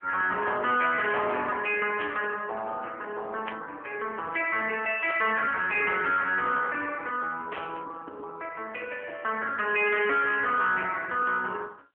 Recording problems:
telephone audio; 240 Hz to 3.3 kHz, AMR-NB
distortion; soft clipping, signal-to-distortion ratio 11 dB
burst of static; 4 times, first at 2 s; peak -5 dB vs average level

